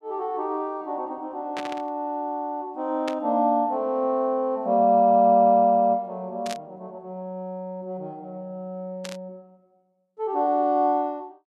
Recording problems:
static burst; 4 times, first at 1.5 s; peak -6 dB vs average level

